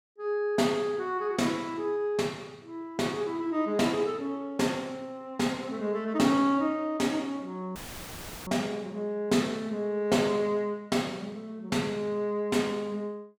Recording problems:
audio cutting out; at 8 s for 0.5 s; filled with static

